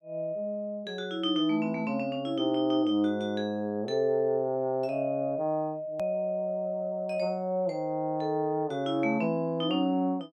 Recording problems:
edit click; at 6 s

